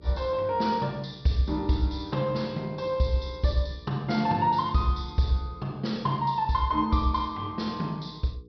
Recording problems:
treble cut off; nothing above 5.5 kHz
electrical hum; 60 Hz, harmonics up to 480 Hz, SNR 24 dB

